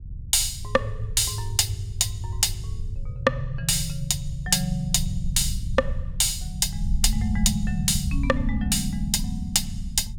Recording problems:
low-frequency rumble; below 88 Hz, SNR 8 dB

